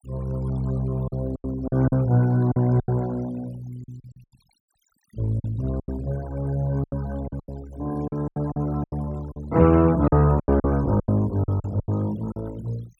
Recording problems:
noise reduction artefacts; signal-to-artefact ratio 22 dB
packet loss; 12% of the sound replaced, filled with silence

